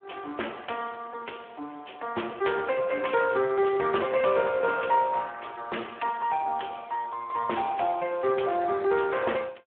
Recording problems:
phone line; 300 Hz to 3.3 kHz, Speex

